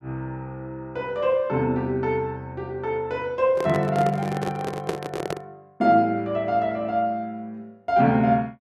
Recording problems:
microphone handling noise; from 3.5 to 5.5 s; peak +2 dB vs average level

